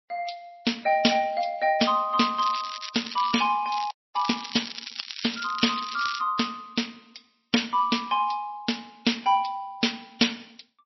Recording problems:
codec artefacts; MP3, then MP3, log-spectral distance 10 dB, nothing above 5.7 kHz
crackling; from 2.5 to 3.5 s and from 3.5 to 6 s; loose cable, SNR 10 dB
audio freezing; at 4 s

